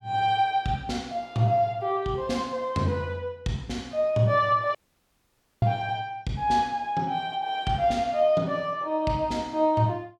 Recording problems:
dropout; at 5 s for 1 s

